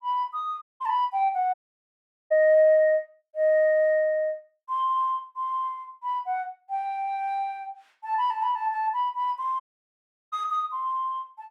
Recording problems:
audio cutting out; at 0.5 s, at 1.5 s for 1 s and at 9.5 s for 0.5 s

